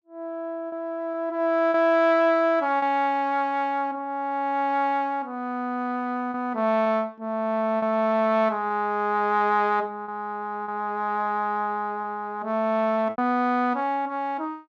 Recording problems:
lost packets; 3% of the sound replaced, filled with repeated pitch periods

